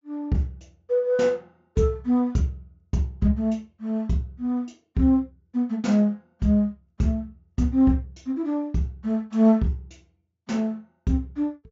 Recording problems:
treble missing; nothing above 7.4 kHz

